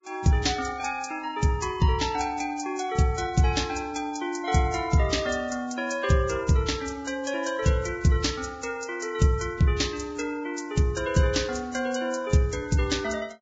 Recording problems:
codec artefacts; Vorbis, log-spectral distance 4 dB, nothing above 7.3 kHz

